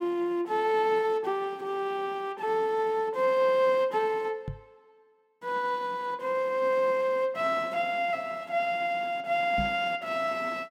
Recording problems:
microphone thump; at 4.5 s and at 9.5 s; peak -2 dB vs average level

